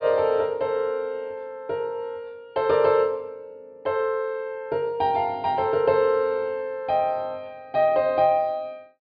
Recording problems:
treble cut off; nothing above 4.9 kHz

